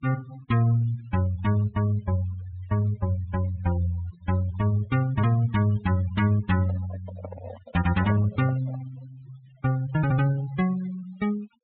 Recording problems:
low-pass filter; nothing above 4 kHz
noise reduction artefacts; signal-to-artefact ratio 19 dB
handling noise; from 6.5 to 9 s; peak -9 dB vs average level

